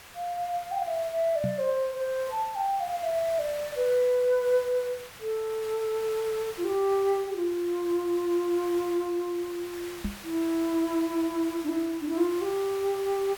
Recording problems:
background hiss; SNR 15 dB
knock on the microphone; at 1.5 s and at 10 s; peak +1 dB vs average level

